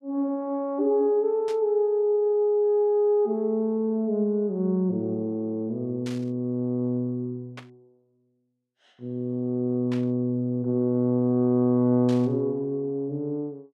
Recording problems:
burst of static; 5 times, first at 1.5 s; peak -12 dB vs average level

